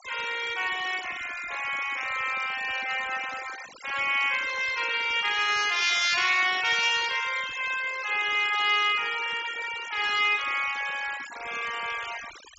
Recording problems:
treble cut off; nothing above 8 kHz
noise reduction artefacts; signal-to-artefact ratio 14 dB

